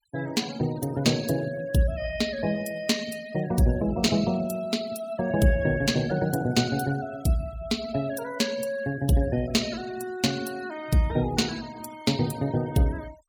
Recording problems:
noise reduction artefacts; signal-to-artefact ratio 18 dB

